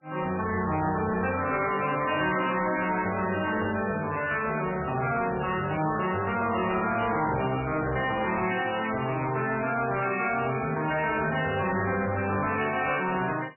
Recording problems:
codec artefacts; MP3, log-spectral distance 6 dB, nothing above 2.6 kHz
distorted audio; hard clipping, uneven, signal-to-distortion ratio 10 dB

